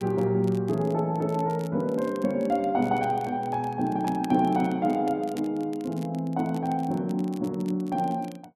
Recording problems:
crackle; vinyl, SNR 25 dB

